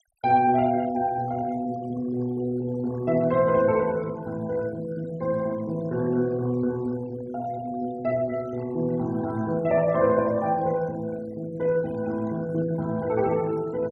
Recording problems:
noise reduction artefacts; signal-to-artefact ratio 22 dB

